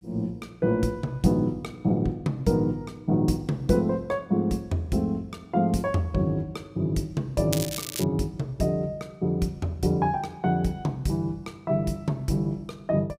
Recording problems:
crackling; at 7.5 s; loose cable, SNR 6 dB

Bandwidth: 15.5 kHz